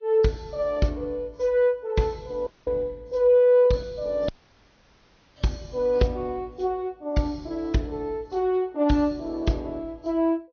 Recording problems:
treble cut off; nothing above 6.3 kHz
codec artefacts; AAC, log-spectral distance 2 dB
audio cutting out; at 2.5 s and at 4.5 s for 1 s

